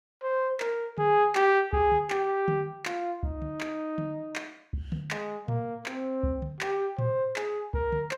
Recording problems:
none

